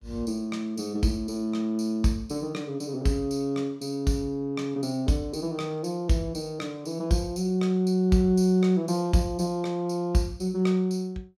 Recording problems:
none

